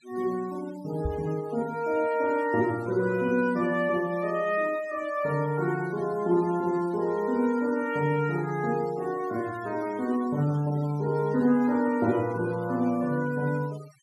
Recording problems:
denoising artefacts; signal-to-artefact ratio 21 dB
knock on the microphone; at 1 s; peak 0 dB vs average level

